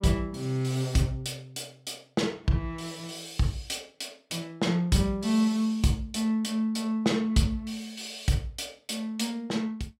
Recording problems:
none

